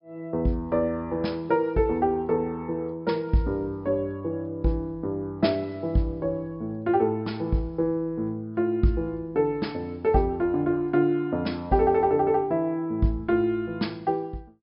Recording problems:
treble cut off; nothing above 5.5 kHz

